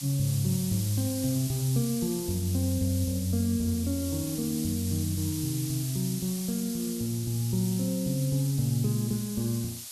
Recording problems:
hiss; SNR 8 dB

